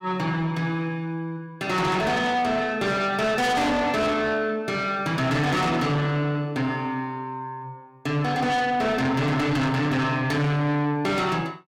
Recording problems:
distortion; soft clipping, signal-to-distortion ratio 7 dB

